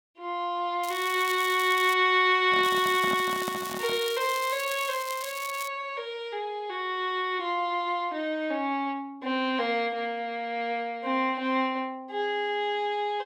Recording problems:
crackling; from 1 to 2 s and from 2.5 to 5.5 s; loose cable, SNR 12 dB
handling noise; from 2.5 to 4 s; peak -4 dB vs average level

